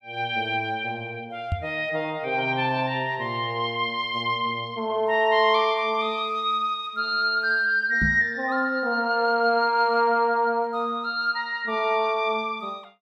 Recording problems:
microphone bump; at 1.5 s and at 8 s; peak +1 dB vs average level

